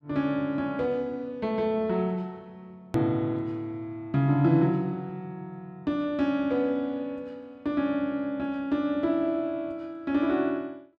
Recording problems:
hard cut with a click; at 3 s

